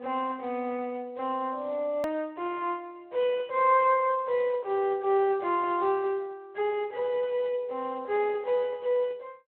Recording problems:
telephone audio; 300 Hz to 3.3 kHz, Speex
edit click; at 2 s

